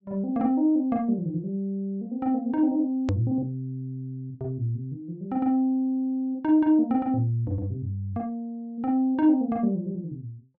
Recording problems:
treble cut off; nothing above 7.7 kHz
edit click; at 3 s

